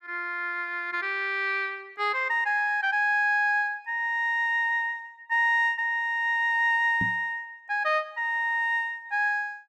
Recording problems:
knock on the microphone; at 7 s; peak -4 dB vs average level

